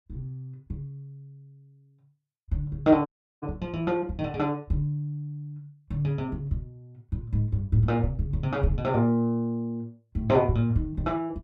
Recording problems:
audio cutting out; at 3 s

